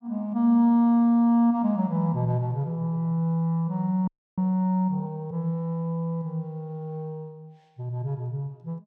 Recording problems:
audio freezing; at 4 s

